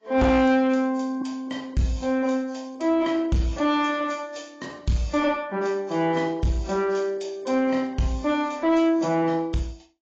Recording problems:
lossy compression; AAC, log-spectral distance 3 dB, nothing above 7.3 kHz
distortion; soft clipping, signal-to-distortion ratio 10 dB

